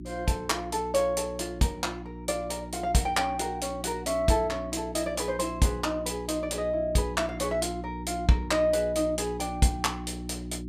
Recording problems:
electrical hum; 60 Hz, harmonics up to 360 Hz, SNR 11 dB

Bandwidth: 15.5 kHz